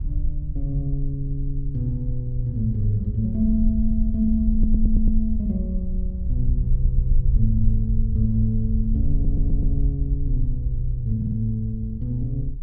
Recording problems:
wind noise; below 58 Hz, SNR 1 dB
stutter; 4 times, first at 4.5 s

